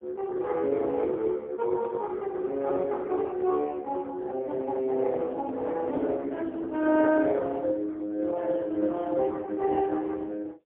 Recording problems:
telephone audio; 260 Hz to 3.4 kHz, AMR-NB, then MP3

